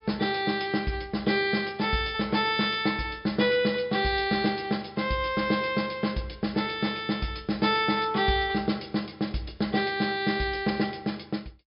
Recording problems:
treble missing; nothing above 5.5 kHz

